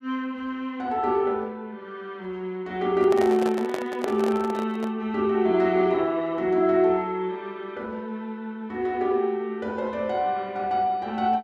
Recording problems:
handling noise; from 3 to 5 s; peak -1 dB vs average level

